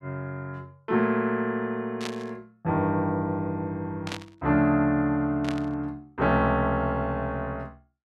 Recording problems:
burst of static; at 2 s, at 4 s and at 5.5 s; peak -4 dB vs average level

